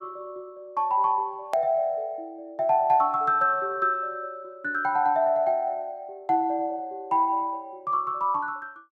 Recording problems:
click at an edit; at 1.5 s

